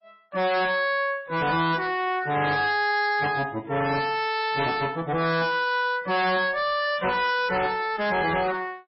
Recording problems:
codec artefacts; MP3, log-spectral distance 3 dB, nothing above 5 kHz
distortion; soft clipping, signal-to-distortion ratio 8 dB

